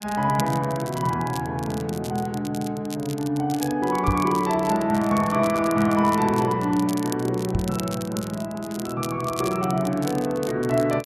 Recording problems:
crackling; vinyl, SNR 15 dB
microphone thump; at 4 s and at 7.5 s; peak +3 dB vs average level

